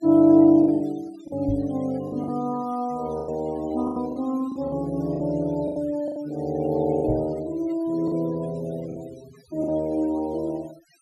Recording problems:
noise reduction artefacts; signal-to-artefact ratio 24 dB
lost packets; 8% of the sound replaced, filled with the last packet
knock on the microphone; at 1.5 s and at 7 s; peak -1 dB vs average level

